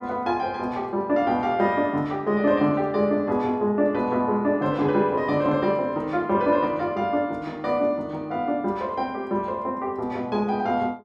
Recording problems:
none

